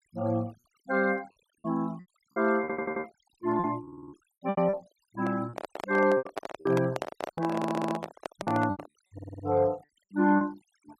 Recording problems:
noise reduction artefacts; signal-to-artefact ratio 24 dB
lost packets; 12% of the sound replaced, filled with repeated pitch periods
audio stuttering; 4 times, first at 2.5 s
microphone handling noise; from 5 to 9 s; peak 0 dB vs average level

